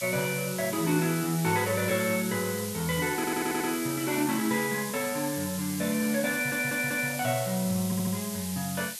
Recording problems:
hiss; SNR 7 dB
stutter; at 3 s, at 6.5 s and at 8 s

